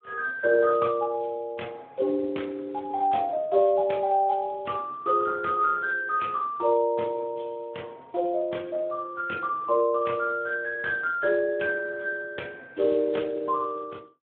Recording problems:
phone line; 220 Hz to 3 kHz, Speex

